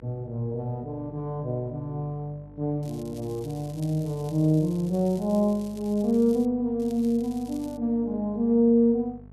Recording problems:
electrical hum; 50 Hz, harmonics up to 900 Hz, SNR 22 dB
crackling; from 3 to 6.5 s and at 7 s; loose cable, SNR 25 dB

